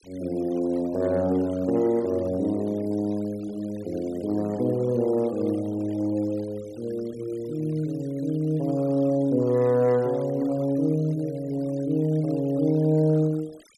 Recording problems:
noise reduction artefacts; signal-to-artefact ratio 25 dB

